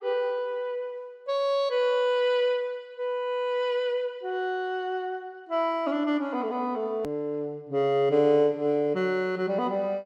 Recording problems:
click at an edit; at 7 s

